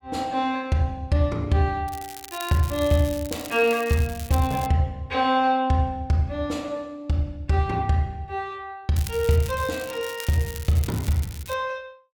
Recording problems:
crackle; from 2 to 4.5 s and from 9 to 12 s; loose cable, SNR 15 dB

